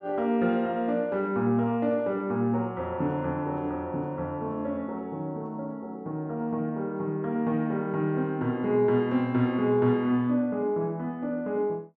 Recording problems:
none

